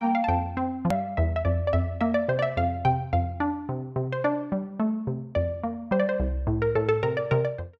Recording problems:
hard cut with a click; at 1 s

